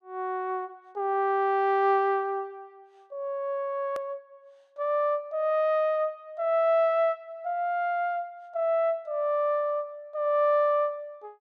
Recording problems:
click at an edit; at 4 s

